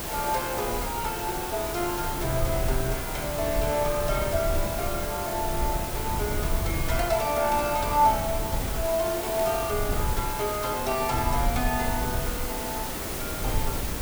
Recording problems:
background hiss; slope -4 dB per octave, SNR 4 dB
low-frequency rumble; below 98 Hz, SNR 6 dB

